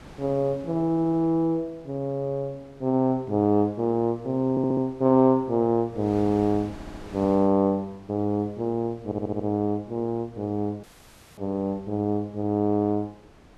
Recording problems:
wind noise; below 870 Hz, SNR 23 dB
stutter; 4 times, first at 1 s
audio cutting out; at 11 s for 0.5 s

